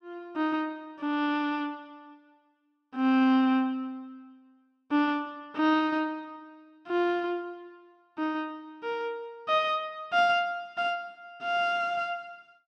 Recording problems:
none

